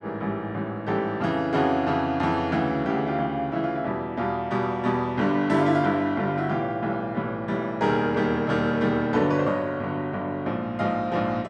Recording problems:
none

